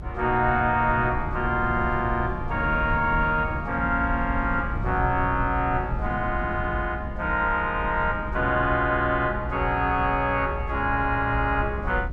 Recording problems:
rumble; below 84 Hz, SNR 10 dB
wind noise; below 200 Hz, SNR 12 dB

